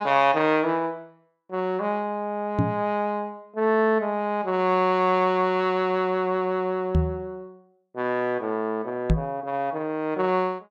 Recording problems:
microphone bump; at 2.5 s, at 7 s and at 9 s; peak +6 dB vs average level

